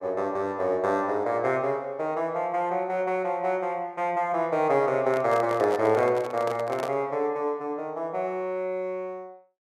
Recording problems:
microphone handling noise; from 5 to 7 s; peak -1 dB vs average level

